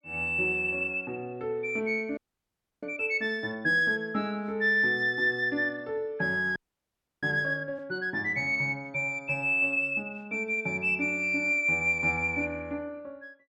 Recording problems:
audio freezing; at 2 s for 0.5 s and at 6.5 s for 0.5 s

